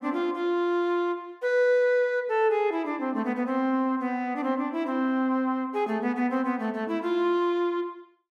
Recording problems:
none

